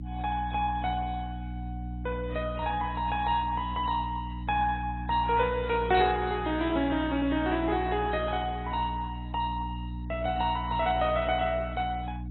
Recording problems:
lossy codec; AAC, then MP2, log-spectral distance 3 dB, nothing above 3.4 kHz
hum; 60 Hz, harmonics up to 300 Hz, SNR 8 dB

